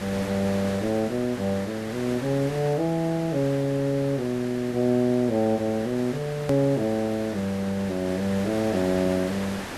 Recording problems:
background hiss; SNR 12 dB
hard cut with a click; at 6.5 s

